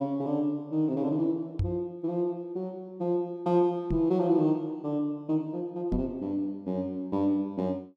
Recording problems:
microphone thump; at 1.5 s, at 4 s and at 6 s; peak +3 dB vs average level

